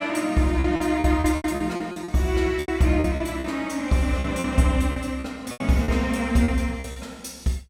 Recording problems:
lost packets; 13% of the sound replaced, filled with repeated pitch periods

